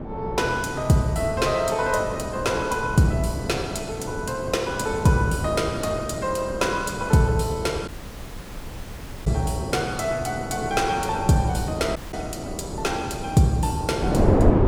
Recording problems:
wind noise; below 450 Hz, SNR 6 dB
audio cutting out; at 8 s for 1.5 s and at 12 s

